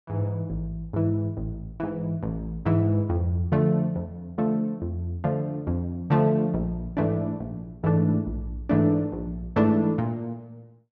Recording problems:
low-pass filter; nothing above 8 kHz

